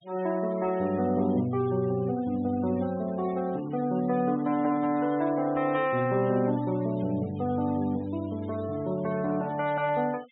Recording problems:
low-pass filter; nothing above 3.8 kHz
denoising artefacts; signal-to-artefact ratio 23 dB

